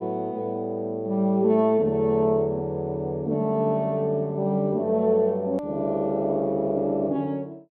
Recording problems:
hard cut with a click; at 5.5 s

